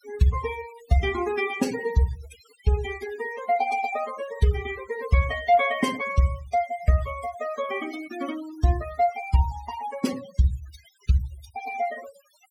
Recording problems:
denoising artefacts; signal-to-artefact ratio 15 dB

